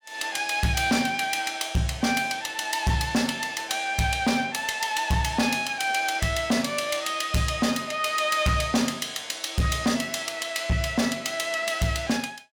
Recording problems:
distortion; hard clipping, signal-to-distortion ratio 12 dB

